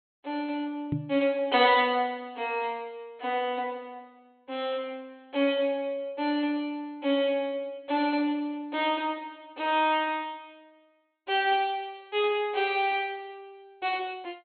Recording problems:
treble cut off; nothing above 4.2 kHz
knock on the microphone; at 1 s; peak +1 dB vs average level

